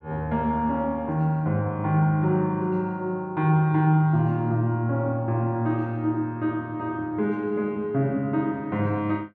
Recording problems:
none

